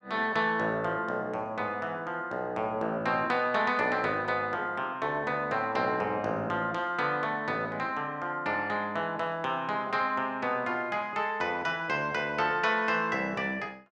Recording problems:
none

